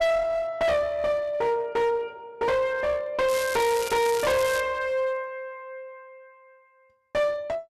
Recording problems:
distortion; hard clipping, uneven, signal-to-distortion ratio 6 dB
crackling; from 3.5 to 4.5 s; loose cable, SNR 9 dB

